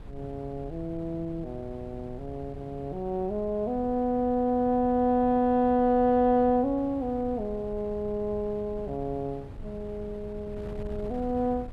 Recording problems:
wind noise; below 150 Hz, SNR 16 dB

